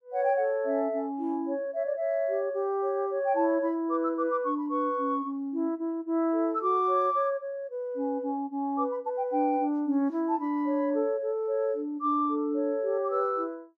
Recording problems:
none

